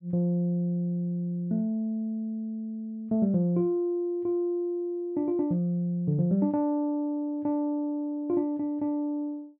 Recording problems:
none

